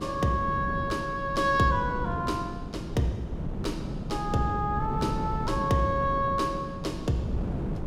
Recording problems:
wind noise; below 250 Hz, SNR 6 dB

